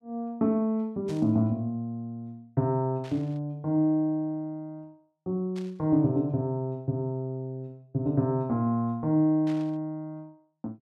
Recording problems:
static burst; 4 times, first at 1 s; peak -14 dB vs average level

